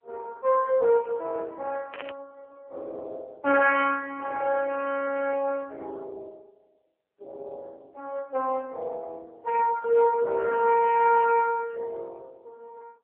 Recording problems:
telephone audio; 340 Hz to 3.9 kHz, AMR-NB
static burst; at 2 s; peak -9 dB vs average level

